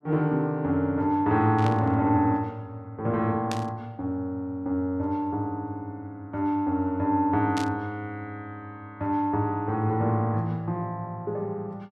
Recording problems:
static burst; at 1.5 s, at 3.5 s and at 7.5 s; peak -4 dB vs average level

